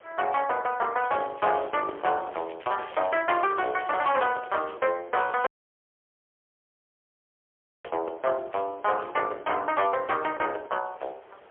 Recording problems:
phone line; 340 Hz to 3.5 kHz, AMR-NB, then MP3
distorted audio; soft clipping, signal-to-distortion ratio 12 dB
wind on the microphone; below 1.4 kHz, SNR 23 dB
crackle; 4 times, first at 1 s; loose cable, SNR 23 dB
audio cutting out; at 5.5 s for 2.5 s

